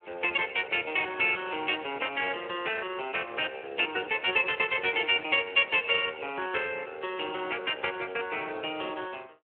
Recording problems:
telephone audio; 320 Hz to 3.5 kHz, Speex

